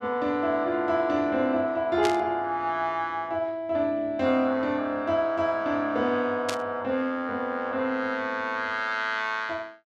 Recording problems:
burst of static; at 2 s and at 6.5 s; peak 0 dB vs average level

